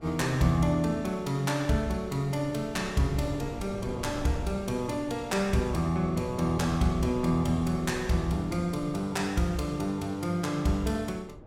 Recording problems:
wind on the microphone; below 370 Hz, SNR 14 dB

